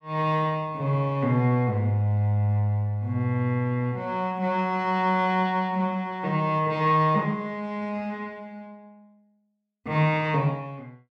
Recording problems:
none

